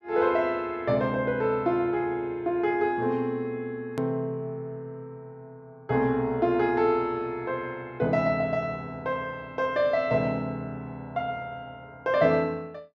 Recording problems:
edit click; at 4 s

